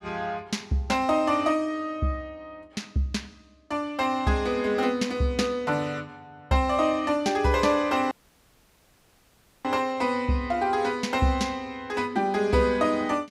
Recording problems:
audio cutting out; at 8 s for 1.5 s

